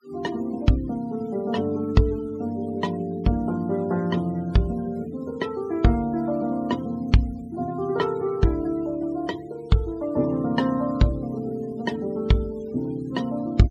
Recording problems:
denoising artefacts; signal-to-artefact ratio 23 dB

